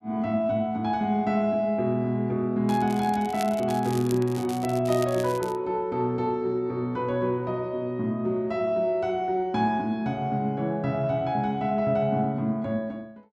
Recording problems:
crackle; from 2.5 to 5.5 s; loose cable, SNR 17 dB

